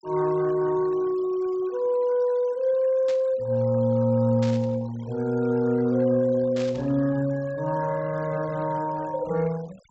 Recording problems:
low-pass filter; nothing above 7.9 kHz
denoising artefacts; signal-to-artefact ratio 24 dB
static burst; at 3 s, at 4.5 s and at 6.5 s; peak -10 dB vs average level

